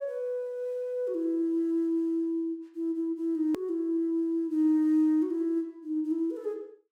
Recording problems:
edit click; at 3.5 s

